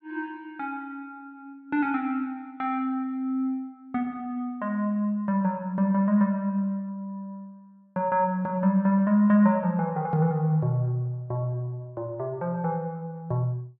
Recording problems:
none

